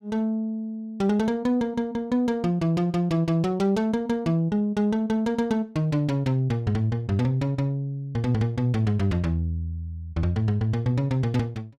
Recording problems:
none

